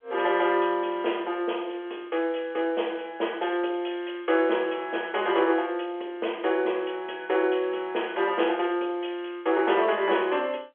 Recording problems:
phone line; 280 Hz to 3.4 kHz, G.711

